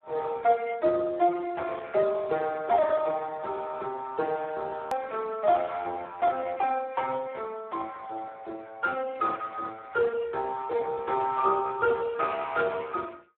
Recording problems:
phone line; 320 Hz to 2 kHz, Speex
hard cut with a click; at 5 s

